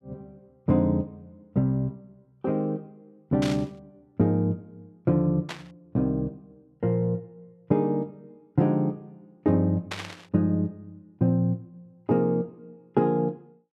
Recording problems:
burst of static; at 3.5 s, at 5.5 s and at 10 s; peak -2 dB vs average level

